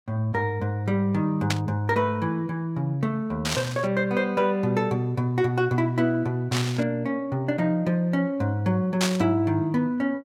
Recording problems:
burst of static; 4 times, first at 1.5 s; peak +3 dB vs average level

